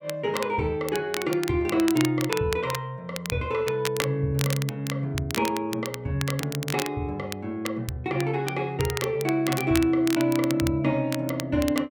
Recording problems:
crackle; vinyl, SNR 9 dB

